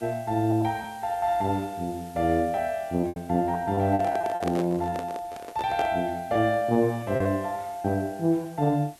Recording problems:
hiss; slope -1 dB per octave, SNR 25 dB
lost packets; 6% of the sound replaced, filled with repeated pitch periods
microphone handling noise; from 4 to 6 s; peak -1 dB vs average level

